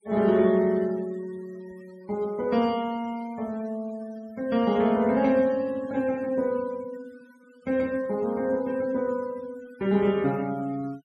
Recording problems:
denoising artefacts; signal-to-artefact ratio 25 dB

